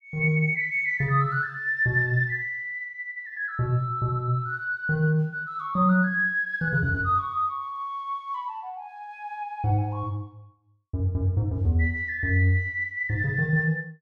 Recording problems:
none

